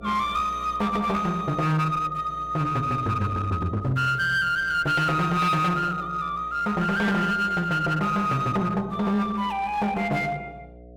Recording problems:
distortion; hard clipping, uneven, signal-to-distortion ratio 9 dB
hum; 60 Hz, harmonics up to 720 Hz, SNR 22 dB

